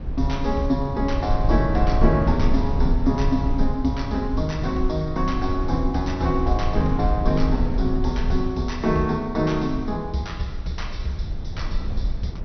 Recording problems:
treble missing; nothing above 5.9 kHz
low-frequency rumble; below 72 Hz, SNR 3 dB

